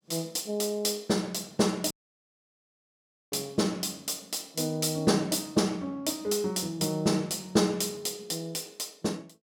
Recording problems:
audio cutting out; at 2 s for 1.5 s

